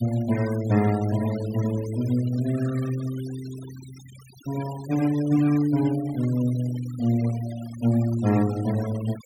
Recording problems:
noise reduction artefacts; signal-to-artefact ratio 18 dB

